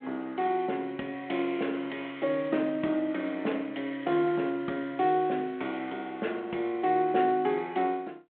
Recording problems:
phone line; 220 Hz to 3.3 kHz, G.726

